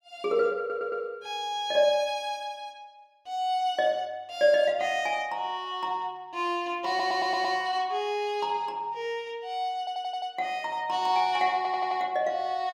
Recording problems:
audio stuttering; 4 times, first at 0.5 s

